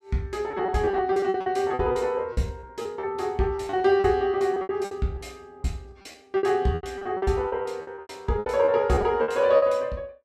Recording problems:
packet loss; 17% of the sound replaced, filled with repeated pitch periods

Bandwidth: 14.5 kHz